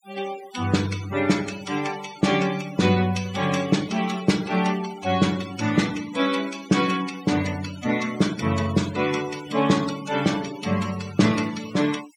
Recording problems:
denoising artefacts; signal-to-artefact ratio 15 dB

